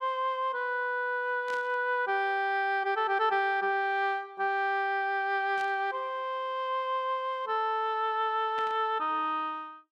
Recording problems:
static burst; at 1.5 s, at 5.5 s and at 8.5 s; peak -11 dB vs average level

